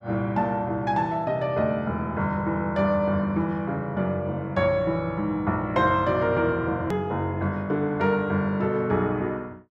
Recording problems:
hard cut with a click; at 7 s

